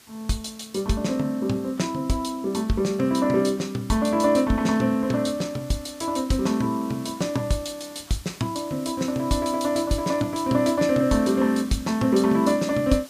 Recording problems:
background hiss; SNR 22 dB

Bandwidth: 15 kHz